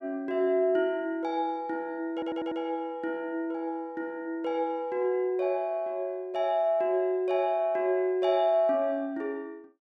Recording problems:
stutter; at 2 s

